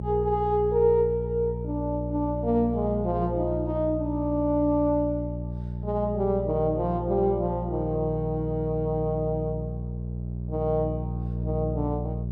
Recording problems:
hum; 60 Hz, harmonics up to 420 Hz, SNR 6 dB

